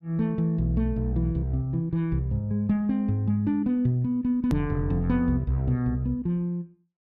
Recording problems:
edit click; at 4.5 s

